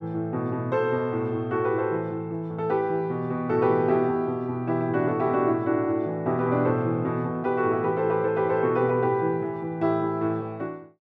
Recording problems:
none

